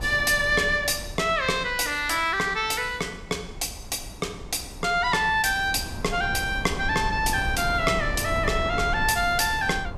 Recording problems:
wind on the microphone; below 250 Hz, SNR 12 dB

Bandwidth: 14 kHz